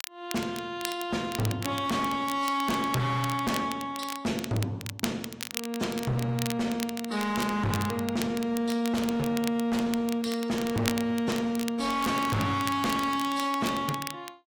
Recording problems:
codec artefacts; AAC, log-spectral distance 2 dB, nothing above 15.1 kHz
distortion; hard clipping, uneven, signal-to-distortion ratio 7 dB
crackling; vinyl, SNR 11 dB

